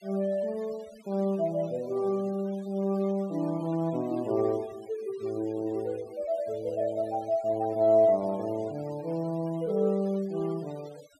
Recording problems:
denoising artefacts; signal-to-artefact ratio 23 dB

